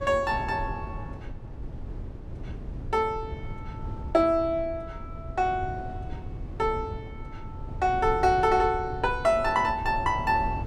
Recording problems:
rumble; below 140 Hz, SNR 12 dB

